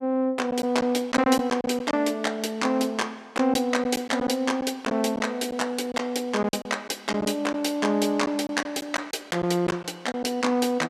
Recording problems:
lost packets; 6% of the sound replaced, filled with silence

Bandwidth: 14.5 kHz